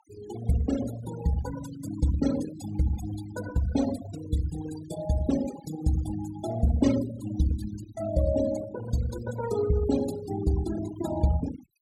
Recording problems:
noise reduction artefacts; signal-to-artefact ratio 11 dB

